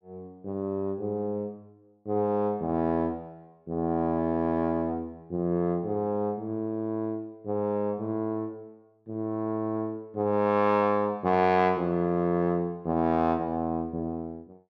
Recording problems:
none

